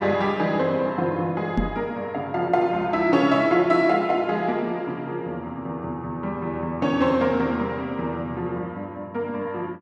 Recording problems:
knock on the microphone; at 1.5 s; peak +5 dB vs average level

